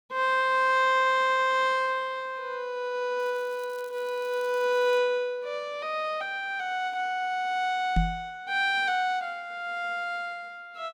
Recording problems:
crackle; from 3 to 5 s; loose cable, SNR 26 dB
microphone thump; at 8 s; peak +5 dB vs average level

